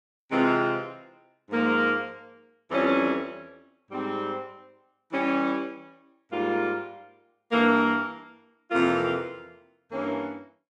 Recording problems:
none

